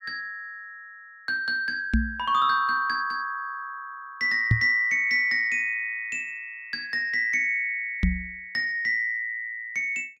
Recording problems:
microphone bump; at 2 s, at 4.5 s and at 8 s; peak +7 dB vs average level

